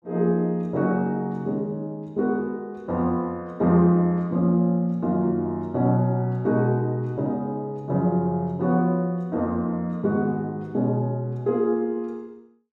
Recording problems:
none

